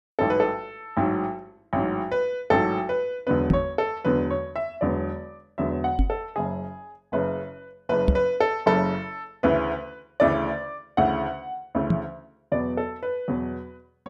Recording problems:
microphone thump; 4 times, first at 3.5 s; peak +9 dB vs average level

